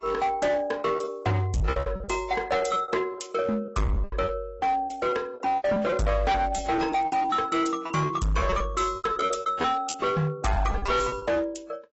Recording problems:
codec artefacts; AAC, log-spectral distance 3 dB, nothing above 7.8 kHz
distortion; hard clipping, signal-to-distortion ratio 7 dB
lost packets; 15% of the sound replaced, filled with repeated pitch periods

